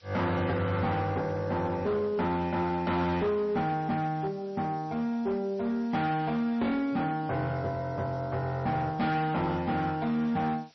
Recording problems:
lossy codec; MP3, log-spectral distance 3 dB, nothing above 5.7 kHz
distorted audio; hard clipping, signal-to-distortion ratio 10 dB
hiss; slope +2 dB per octave, SNR 29 dB

